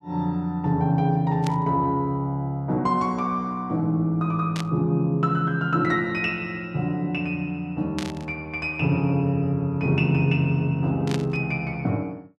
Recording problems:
static burst; 4 times, first at 1.5 s; peak -5 dB vs average level

